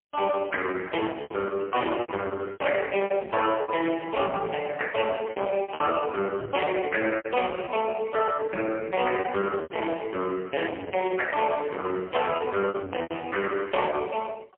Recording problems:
phone line; 280 Hz to 3 kHz, AMR-NB, then MP3
distortion; soft clipping, signal-to-distortion ratio 10 dB
lost packets; 10% of the sound replaced, filled with repeated pitch periods

